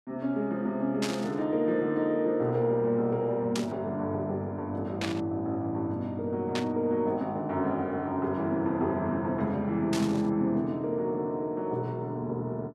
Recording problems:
burst of static; 5 times, first at 1 s; peak 0 dB vs average level

